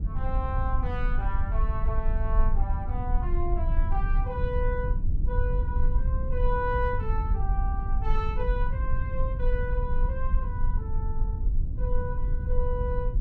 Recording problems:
low-frequency rumble; below 60 Hz, SNR -6 dB

